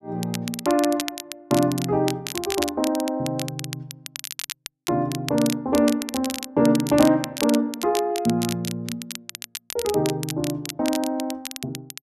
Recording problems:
crackle; vinyl, SNR 9 dB

